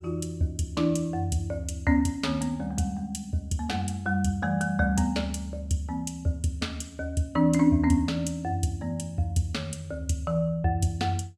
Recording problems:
none

